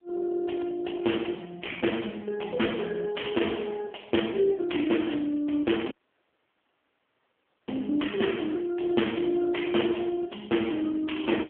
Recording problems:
phone line; 220 Hz to 3.3 kHz, AMR-NB
distortion; soft clipping, signal-to-distortion ratio 12 dB
audio cutting out; at 6 s for 2 s

